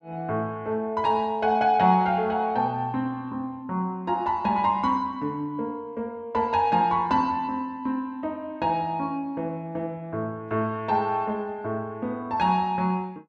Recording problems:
none

